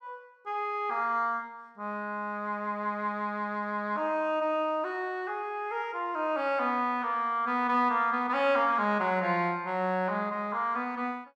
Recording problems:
none

